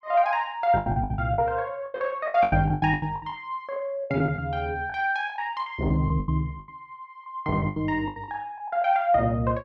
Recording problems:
packet loss; 16% of the sound replaced, filled with the last packet

